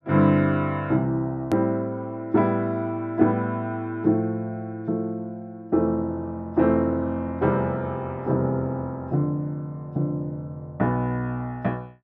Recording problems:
edit click; at 1.5 s

